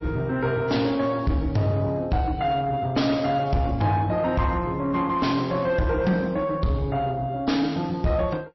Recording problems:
codec artefacts; MP3, log-spectral distance 2 dB, nothing above 5.7 kHz
distorted audio; soft clipping, signal-to-distortion ratio 10 dB

